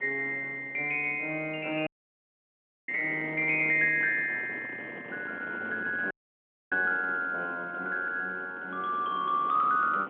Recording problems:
telephone audio; 240 Hz to 3.3 kHz, G.711
wind noise; below 830 Hz, SNR 18 dB
dropout; at 2 s for 1 s and at 6 s for 0.5 s

